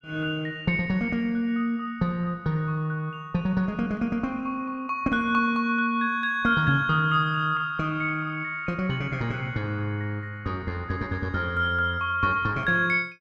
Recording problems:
none

